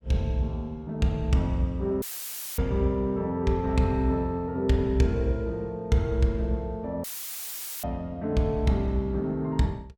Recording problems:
audio cutting out; at 2 s for 0.5 s and at 7 s for 1 s; filled with static

